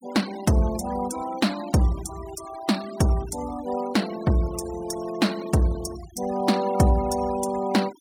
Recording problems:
denoising artefacts; signal-to-artefact ratio 18 dB

